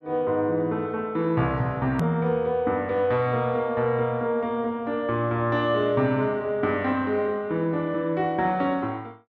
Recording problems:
click at an edit; at 2 s

